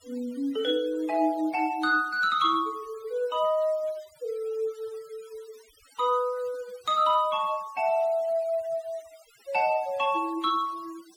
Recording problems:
noise reduction artefacts; signal-to-artefact ratio 25 dB

